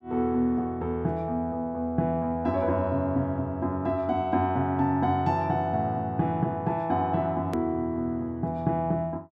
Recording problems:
click at an edit; at 7.5 s

